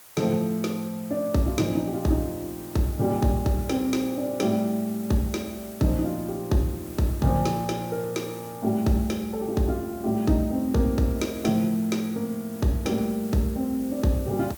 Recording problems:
background hiss; SNR 18 dB

